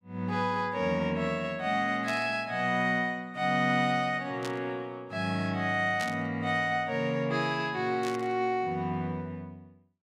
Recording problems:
static burst; 4 times, first at 2 s; peak -5 dB vs average level

